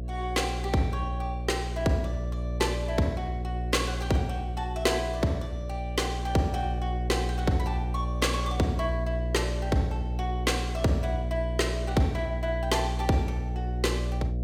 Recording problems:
hum; 60 Hz, harmonics up to 660 Hz, SNR 2 dB

